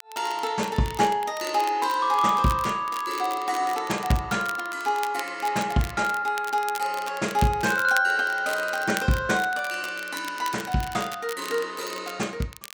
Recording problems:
crackling; vinyl, SNR 15 dB

